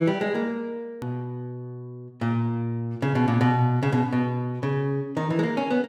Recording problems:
click at an edit; at 1 s

